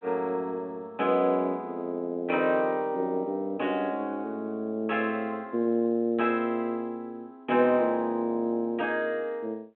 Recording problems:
telephone audio; 190 Hz to 3.2 kHz, G.726

